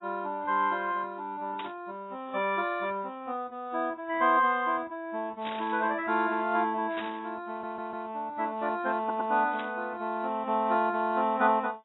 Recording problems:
codec artefacts; AAC, log-spectral distance 2 dB, nothing above 3.2 kHz
burst of static; 4 times, first at 1.5 s; peak -5 dB vs average level
stutter; at 7.5 s and at 9 s

